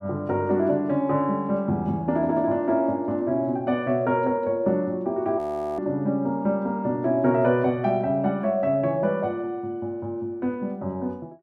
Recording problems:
frozen audio; at 5.5 s

